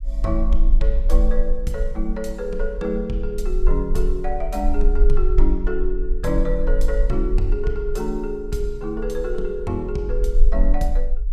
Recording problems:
low-frequency rumble; below 40 Hz, strongest tone 18 Hz, SNR -2 dB

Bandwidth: 14.5 kHz